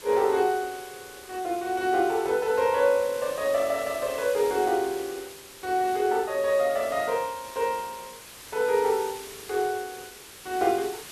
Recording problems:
background hiss; slope 0 dB per octave, SNR 16 dB

